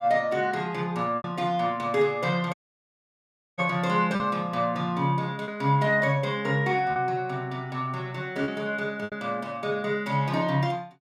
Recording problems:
packet loss; 3% of the sound replaced, filled with repeated pitch periods
audio cutting out; at 2.5 s for 1 s

